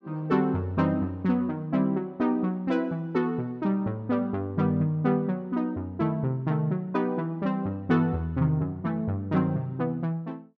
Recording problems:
none

